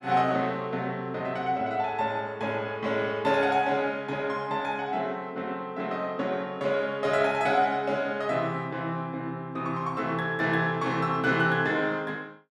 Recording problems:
none

